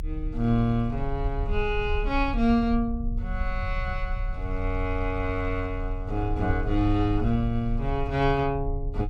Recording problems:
rumble; below 60 Hz, strongest tone 34 Hz, SNR 6 dB

